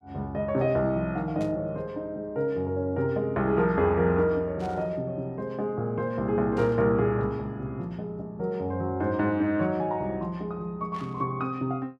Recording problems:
static burst; 4 times, first at 1.5 s; peak -15 dB vs average level

